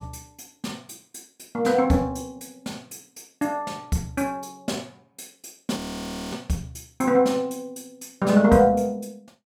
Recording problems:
frozen audio; at 6 s for 0.5 s

